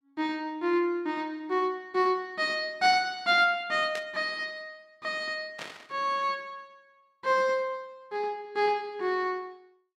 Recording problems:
static burst; at 4 s and at 5.5 s; peak -6 dB vs average level

